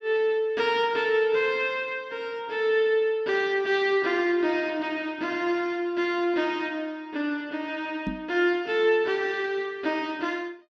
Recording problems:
knock on the microphone; at 8 s; peak -1 dB vs average level

